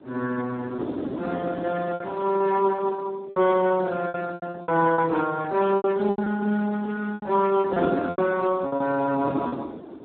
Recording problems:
phone line; 240 Hz to 2.1 kHz, Speex
wind noise; below 450 Hz, SNR 11 dB
packet loss; 11% of the sound replaced, filled with repeated pitch periods

